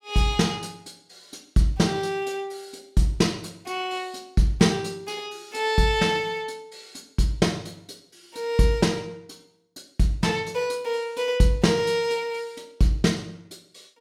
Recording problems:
none

